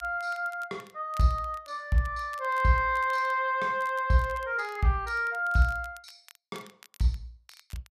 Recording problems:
crackle; vinyl, SNR 27 dB

